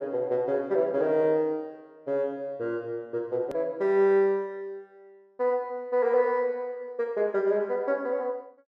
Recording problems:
click at an edit; at 3.5 s

